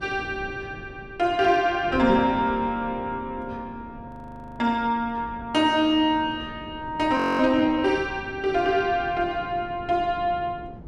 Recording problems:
wind on the microphone; below 330 Hz, SNR 18 dB
audio freezing; at 4 s for 0.5 s and at 7 s

